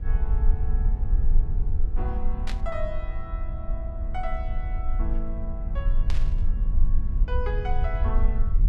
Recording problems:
low-frequency rumble; below 48 Hz, strongest tone 22 Hz, SNR -9 dB
static burst; at 2.5 s and at 6 s; peak +5 dB vs average level

